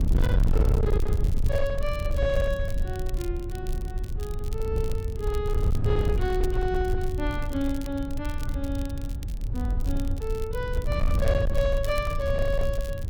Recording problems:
distorted audio; hard clipping, signal-to-distortion ratio 7 dB
rumble; below 88 Hz, SNR -2 dB
crackle; vinyl, SNR 18 dB

